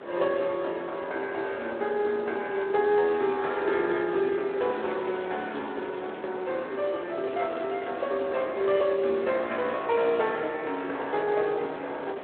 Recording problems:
telephone audio; 280 Hz to 3.7 kHz, Speex
wind on the microphone; below 850 Hz, SNR 11 dB
crackle; from 4.5 to 6.5 s and at 7 s; loose cable, SNR 25 dB

